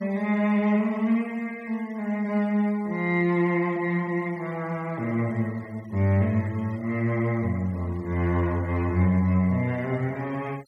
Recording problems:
noise reduction artefacts; signal-to-artefact ratio 27 dB

